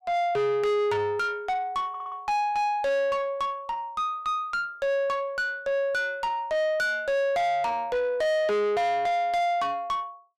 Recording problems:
distorted audio; soft clipping, signal-to-distortion ratio 5 dB
audio stuttering; at 2 s

